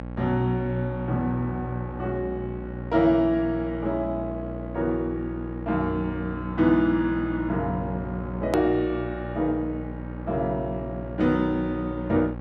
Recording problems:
hum; 60 Hz, harmonics up to 1.4 kHz, SNR 9 dB
edit click; at 8.5 s

